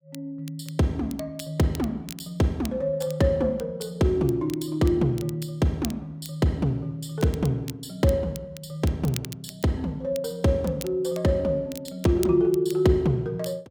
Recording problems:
crackle; vinyl, SNR 18 dB

